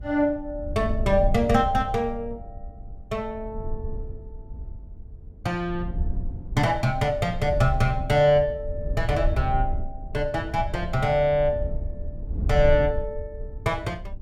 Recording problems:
rumble; below 70 Hz, SNR 8 dB

